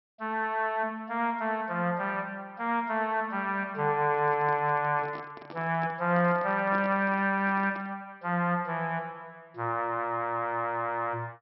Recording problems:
treble missing; nothing above 5.5 kHz
handling noise; from 4 to 8 s; peak -10 dB vs average level

